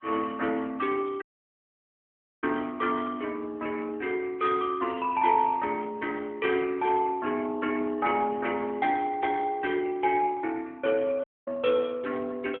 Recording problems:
phone line; 260 Hz to 3.6 kHz, AMR-NB
audio cutting out; at 1 s for 1 s and at 11 s

